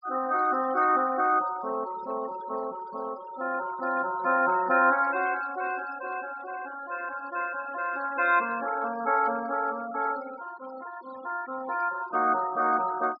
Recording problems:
low-pass filter; nothing above 5.5 kHz
noise reduction artefacts; signal-to-artefact ratio 17 dB

